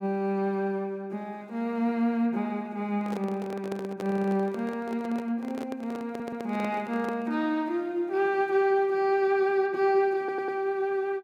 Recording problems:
handling noise; from 3 to 7.5 s; peak -5 dB vs average level
stutter; at 4 s, at 6 s and at 10 s

